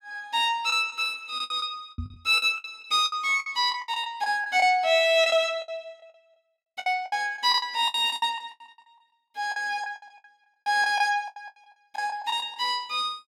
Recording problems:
lost packets; 15% of the sound replaced, filled with the last packet
knock on the microphone; at 2 s; peak -5 dB vs average level

